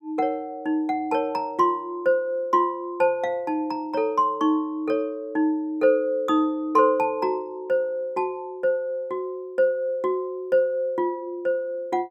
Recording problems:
none

